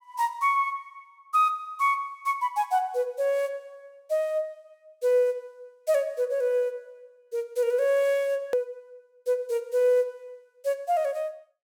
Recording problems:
hard cut with a click; at 8.5 s

